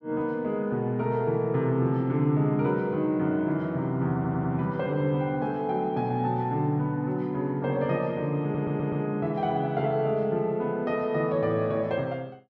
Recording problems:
stutter; at 4 s and at 8.5 s

